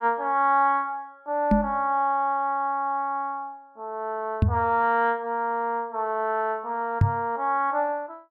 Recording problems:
microphone bump; at 1.5 s, at 4.5 s and at 7 s; peak +8 dB vs average level

